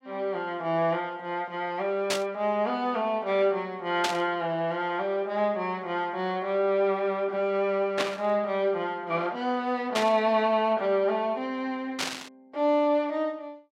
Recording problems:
burst of static; 5 times, first at 2 s; peak +3 dB vs average level

